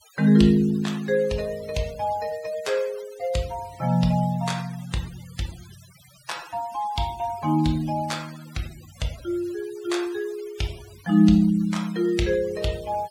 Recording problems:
noise reduction artefacts; signal-to-artefact ratio 21 dB

